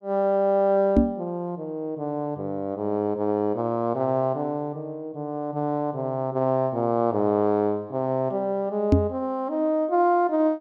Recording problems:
microphone bump; at 1 s and at 9 s; peak +10 dB vs average level

